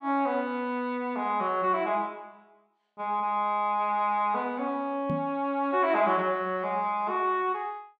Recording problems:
microphone thump; at 5 s; peak 0 dB vs average level

